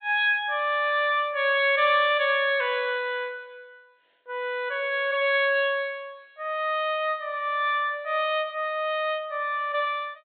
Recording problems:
treble cut off; nothing above 4 kHz

